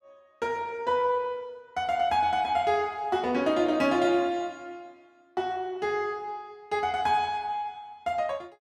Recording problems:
none

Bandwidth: 15.5 kHz